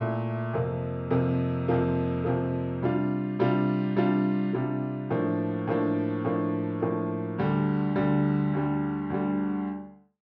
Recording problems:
low-pass filter; nothing above 5.9 kHz

